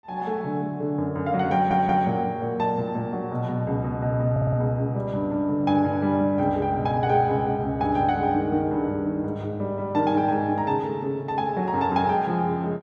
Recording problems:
audio stuttering; at 1.5 s and at 4.5 s

